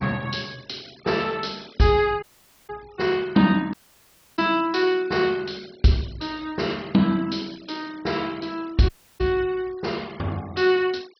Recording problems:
low-pass filter; nothing above 5.5 kHz
noise reduction artefacts; signal-to-artefact ratio 24 dB
dropout; at 2 s, at 3.5 s for 0.5 s and at 9 s

